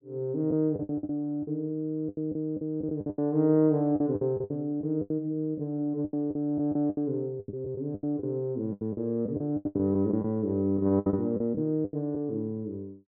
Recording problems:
packet loss; 15% of the sound replaced, filled with the last packet

